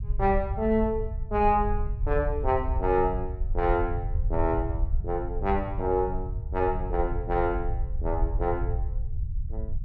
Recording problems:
rumble; below 74 Hz, SNR 4 dB

